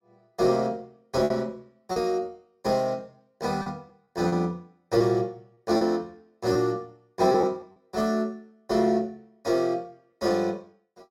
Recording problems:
packet loss; 5% of the sound replaced, filled with repeated pitch periods

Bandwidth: 16.5 kHz